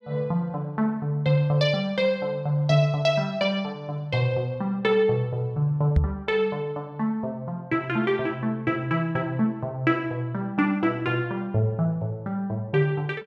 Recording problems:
microphone bump; at 6 s; peak +7 dB vs average level

